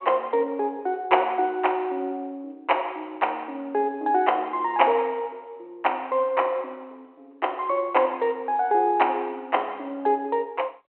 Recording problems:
telephone audio; 280 Hz to 3.2 kHz, G.726

